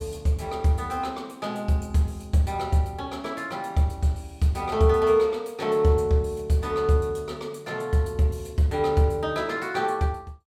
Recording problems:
none

